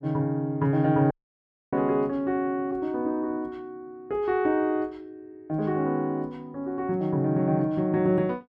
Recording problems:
audio cutting out; at 1 s for 0.5 s

